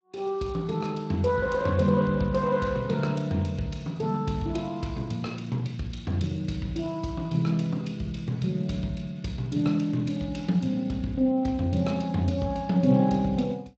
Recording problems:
lossy compression; Speex, log-spectral distance 3 dB, nothing above 16 kHz

